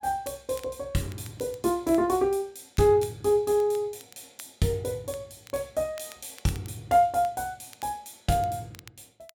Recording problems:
crackling; vinyl, SNR 24 dB

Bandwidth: 17.5 kHz